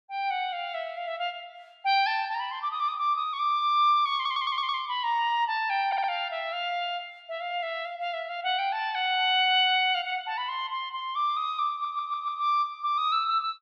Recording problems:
audio stuttering; at 4 s, at 6 s and at 12 s

